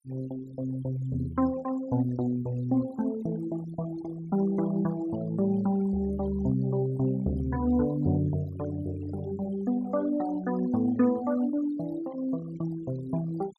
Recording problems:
noise reduction artefacts; signal-to-artefact ratio 20 dB

